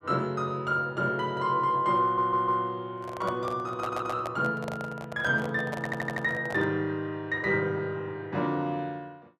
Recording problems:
audio stuttering; at 2 s, at 4 s and at 6 s
handling noise; from 3 to 6.5 s; peak -3 dB vs average level

